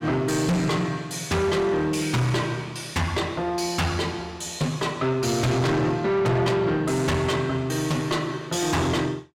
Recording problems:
distorted audio; soft clipping, signal-to-distortion ratio 7 dB

